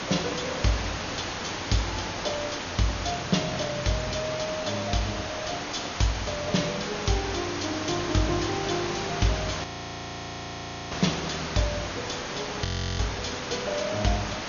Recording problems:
lossy codec; MP2, log-spectral distance 18 dB, nothing above 6.7 kHz
hiss; slope -3 dB per octave, SNR 3 dB
audio freezing; at 9.5 s for 1.5 s and at 13 s

